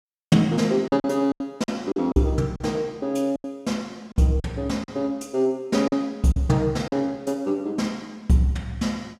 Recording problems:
packet loss; 7% of the sound replaced, filled with silence

